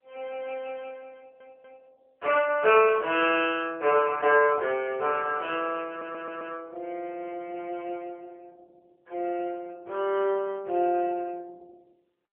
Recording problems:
telephone audio; 320 Hz to 3.1 kHz, AMR-NB
audio stuttering; at 1 s and at 6 s

